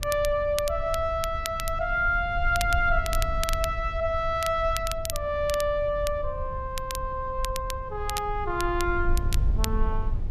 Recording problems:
rumble; below 66 Hz, SNR 6 dB
crackling; vinyl, SNR 10 dB

